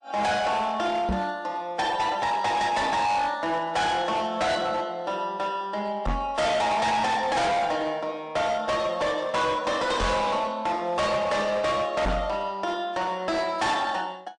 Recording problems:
lossy codec; MP3, log-spectral distance 2 dB, nothing above 9 kHz
distorted audio; hard clipping, signal-to-distortion ratio 7 dB
microphone bump; 4 times, first at 1 s; peak +2 dB vs average level

